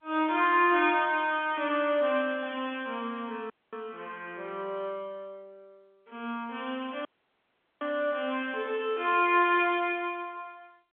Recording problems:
telephone audio; 190 Hz to 3.5 kHz, G.711
dropout; at 3.5 s and at 7 s for 1 s

